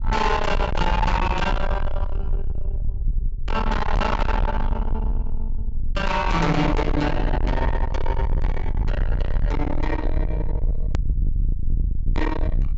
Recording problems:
treble missing; nothing above 8 kHz
distortion; soft clipping, signal-to-distortion ratio 7 dB
low-frequency rumble; below 74 Hz, SNR 2 dB
click at an edit; at 11 s

